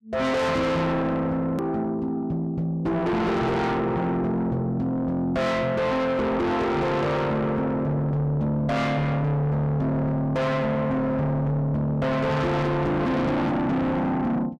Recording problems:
distorted audio; soft clipping, signal-to-distortion ratio 6 dB
edit click; at 1.5 s

